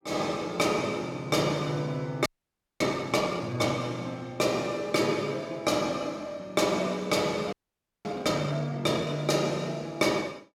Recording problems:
audio freezing; at 2.5 s for 0.5 s and at 7.5 s for 0.5 s

